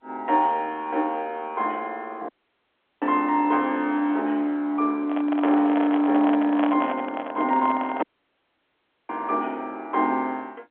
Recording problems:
telephone audio; 240 Hz to 3.6 kHz, G.711
audio cutting out; at 2.5 s for 0.5 s and at 8 s for 1 s
handling noise; from 5 to 8 s; peak 0 dB vs average level

